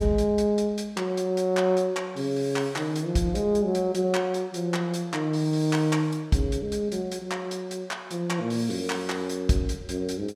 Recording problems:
none

